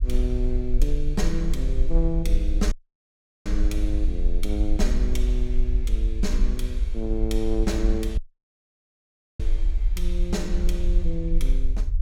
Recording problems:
low-frequency rumble; below 46 Hz, strongest tone 20 Hz, SNR -4 dB
dropout; at 2.5 s for 0.5 s and at 8 s for 1 s

